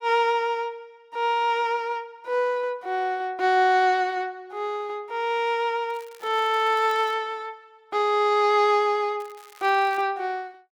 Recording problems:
crackle; from 6 to 7 s and at 9 s; loose cable, SNR 26 dB

